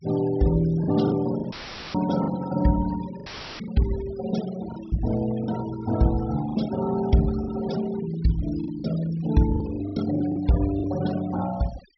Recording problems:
treble missing; nothing above 5.8 kHz
noise reduction artefacts; signal-to-artefact ratio 16 dB
packet loss; 7% of the sound replaced, filled with the last packet
dropout; at 1.5 s and at 3.5 s; filled with static

